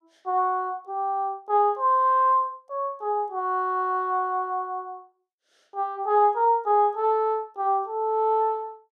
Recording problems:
none

